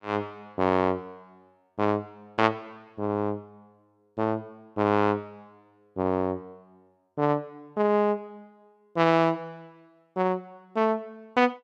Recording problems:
none

